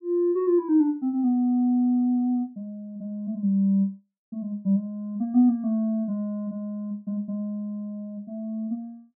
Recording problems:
none

